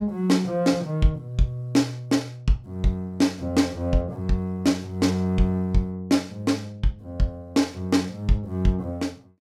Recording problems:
none

